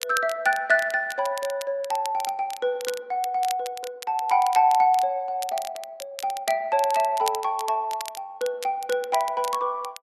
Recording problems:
crackling; vinyl, SNR 14 dB

